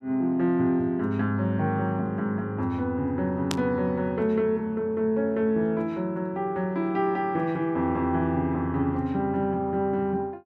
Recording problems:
burst of static; at 3.5 s; peak 0 dB vs average level

